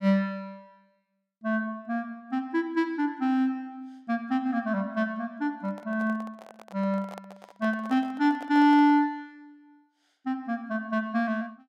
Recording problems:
handling noise; from 5.5 to 9 s; peak -11 dB vs average level

